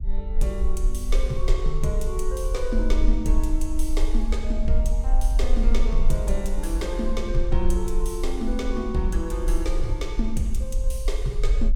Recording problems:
low-frequency rumble; below 40 Hz, strongest tone 18 Hz, SNR -2 dB

